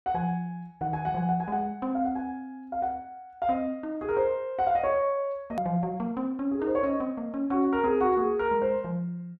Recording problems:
click at an edit; at 5.5 s

